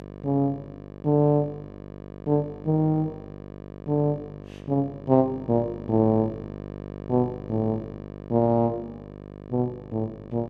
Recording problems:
electrical hum; 50 Hz, harmonics up to 1.8 kHz, SNR 15 dB

